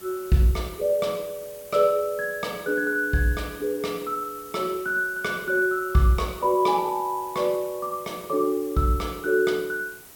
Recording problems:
background hiss; slope -2 dB per octave, SNR 19 dB

